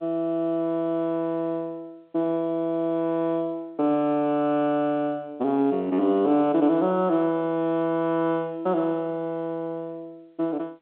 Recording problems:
phone line; 260 Hz to 3.5 kHz, G.711

